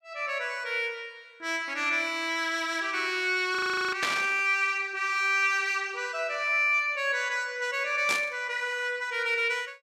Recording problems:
audio freezing; at 3.5 s
burst of static; at 4 s and at 8 s; peak +1 dB vs average level

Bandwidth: 15 kHz